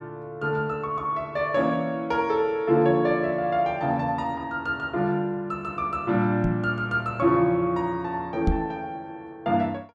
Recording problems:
microphone bump; at 6.5 s and at 8.5 s; peak +5 dB vs average level

